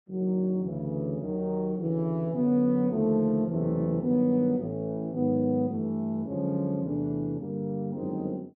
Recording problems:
none

